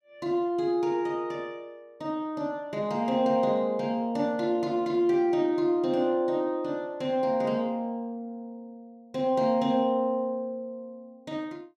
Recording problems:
none

